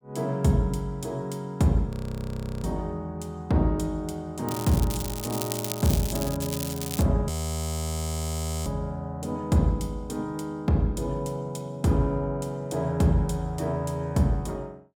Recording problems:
frozen audio; at 2 s for 0.5 s and at 7.5 s for 1.5 s
crackling; from 4.5 to 7 s; loose cable, SNR 7 dB

